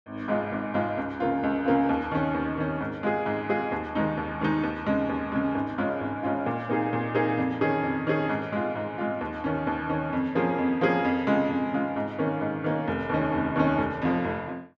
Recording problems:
none

